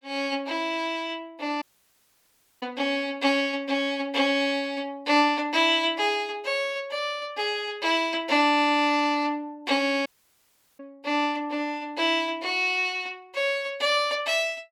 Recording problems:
audio cutting out; at 1.5 s for 1 s and at 10 s for 0.5 s

